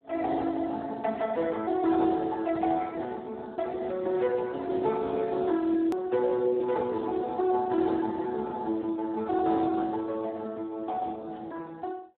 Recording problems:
phone line; 240 Hz to 2.2 kHz, Speex
hard cut with a click; at 6 s

